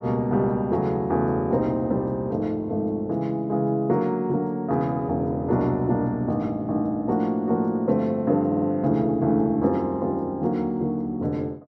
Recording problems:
audio stuttering; at 8.5 s

